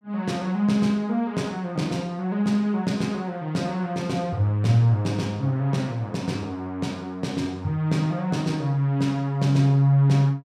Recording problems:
none

